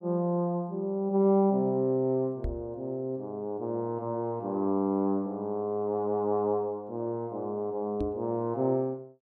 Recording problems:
knock on the microphone; at 2.5 s and at 8 s; peak -1 dB vs average level

